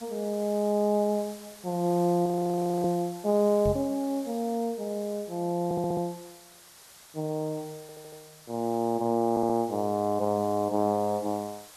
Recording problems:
hiss; slope 0 dB per octave, SNR 20 dB
frozen audio; at 2.5 s for 0.5 s
microphone thump; at 3.5 s; peak -1 dB vs average level
stutter; at 5.5 s, at 8 s and at 9.5 s

